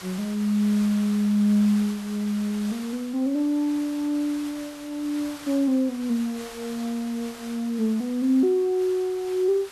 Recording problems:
background hiss; SNR 17 dB

